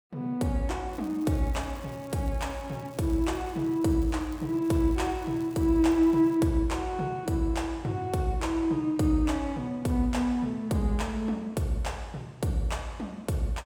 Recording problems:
crackle; from 1 to 6.5 s; loose cable, SNR 26 dB

